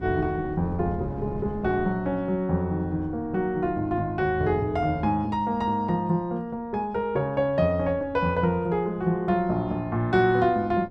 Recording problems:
wind on the microphone; below 280 Hz, SNR 17 dB

